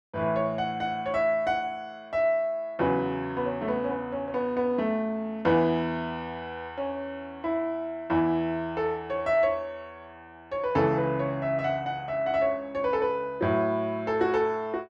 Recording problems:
none

